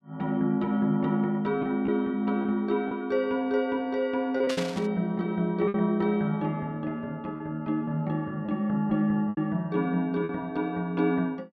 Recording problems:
lost packets; 4% of the sound replaced, filled with repeated pitch periods
static burst; at 4.5 s; peak -2 dB vs average level

